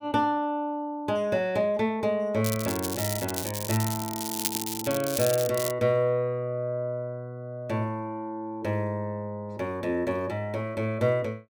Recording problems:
crackle; from 2.5 to 5.5 s; loose cable, SNR 3 dB

